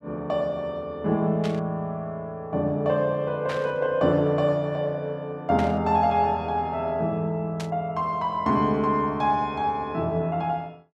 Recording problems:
burst of static; 4 times, first at 1.5 s; peak -6 dB vs average level

